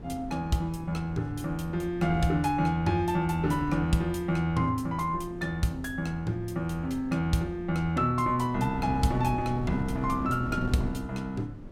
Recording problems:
wind noise; below 270 Hz, SNR 12 dB

